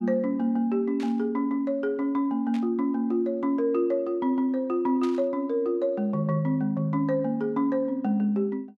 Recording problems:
static burst; at 1 s, at 2.5 s and at 5 s; peak -12 dB vs average level

